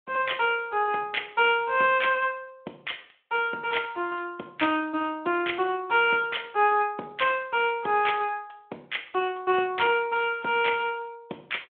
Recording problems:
telephone audio; 260 Hz to 3.4 kHz, Speex

